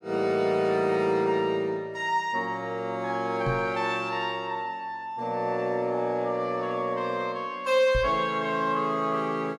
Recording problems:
knock on the microphone; at 3.5 s and at 8 s; peak 0 dB vs average level

